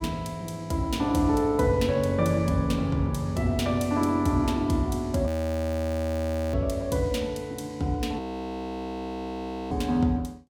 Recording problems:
frozen audio; at 5.5 s for 1.5 s and at 8 s for 1.5 s

